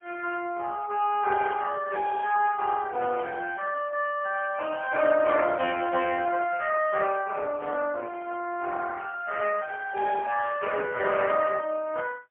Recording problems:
phone line; 320 Hz to 3.1 kHz, AMR-NB, then MP3

